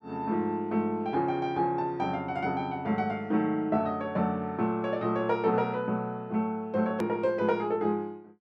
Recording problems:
click at an edit; at 7 s

